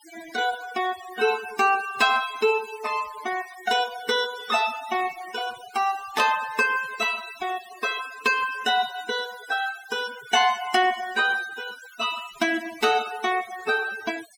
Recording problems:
denoising artefacts; signal-to-artefact ratio 15 dB

